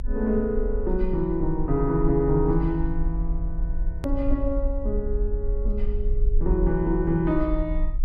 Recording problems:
low-frequency rumble; below 46 Hz, SNR 3 dB
edit click; at 4 s

